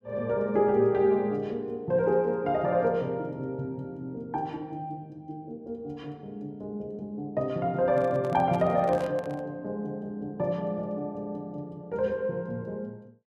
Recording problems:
microphone handling noise; from 8 to 9.5 s; peak -7 dB vs average level

